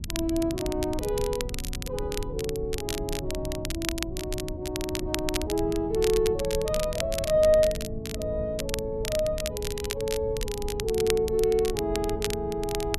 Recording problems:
low-frequency rumble; below 110 Hz, SNR 10 dB
crackle; vinyl, SNR 8 dB

